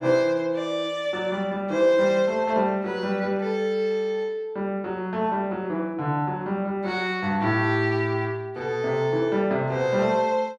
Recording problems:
none

